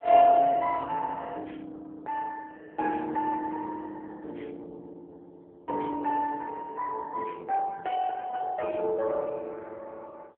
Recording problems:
phone line; 280 Hz to 3 kHz, AMR-NB

